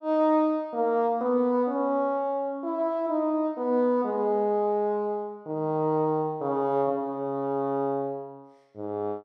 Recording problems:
none

